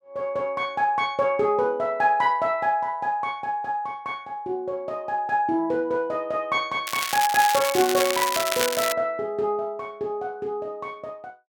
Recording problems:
crackling; from 7 to 9 s; loose cable, SNR 3 dB

